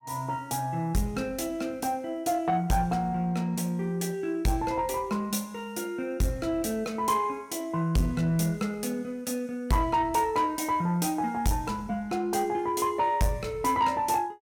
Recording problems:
distortion; soft clipping, signal-to-distortion ratio 11 dB

